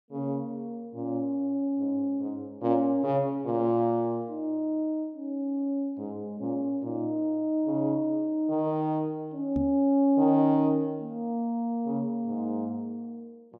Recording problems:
microphone bump; at 9.5 s; peak -1 dB vs average level

